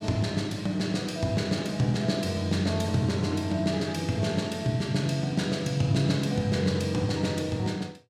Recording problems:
none

